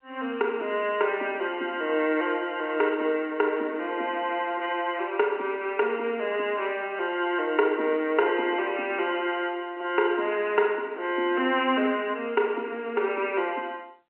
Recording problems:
telephone audio; 240 Hz to 3.1 kHz, G.711

